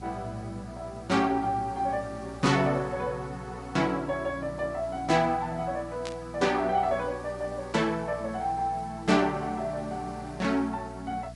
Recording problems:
lossy compression; MP3, log-spectral distance 3 dB, nothing above 11 kHz
hum; 60 Hz, harmonics up to 480 Hz, SNR 17 dB
background hiss; SNR 26 dB
burst of static; at 6 s; peak -6 dB vs average level

